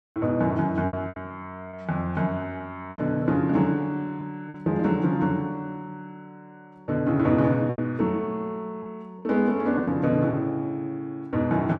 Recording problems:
lost packets; 5% of the sound replaced, filled with repeated pitch periods

